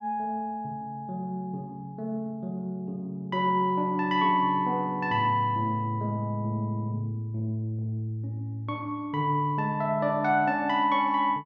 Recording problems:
none

